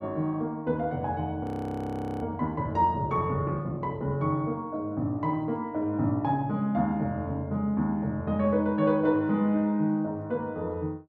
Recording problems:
audio freezing; at 1.5 s for 1 s

